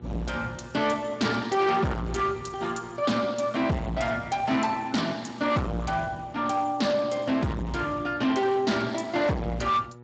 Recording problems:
codec artefacts; Speex, log-spectral distance 5 dB, nothing above 7.6 kHz
distortion; hard clipping, signal-to-distortion ratio 6 dB
hum; 60 Hz, harmonics up to 1.4 kHz, SNR 21 dB

